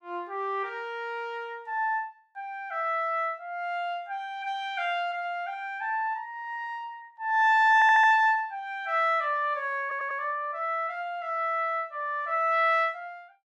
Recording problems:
audio stuttering; at 8 s and at 10 s

